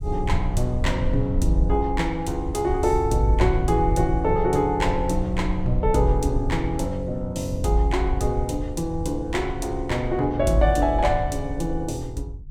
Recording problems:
low-frequency rumble; below 78 Hz, SNR 6 dB

